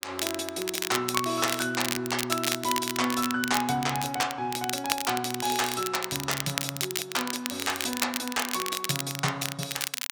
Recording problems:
crackle; vinyl, SNR 3 dB

